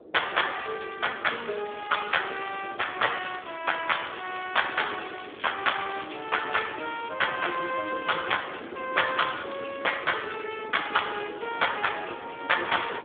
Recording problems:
phone line; 300 Hz to 3.5 kHz, Speex
wind noise; below 520 Hz, SNR 16 dB
crackle; from 0.5 to 3 s, from 3 to 7 s and at 9 s; loose cable, SNR 18 dB

